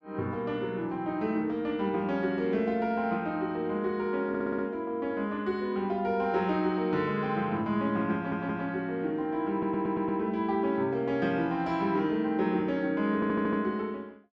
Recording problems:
stutter; 4 times, first at 4.5 s

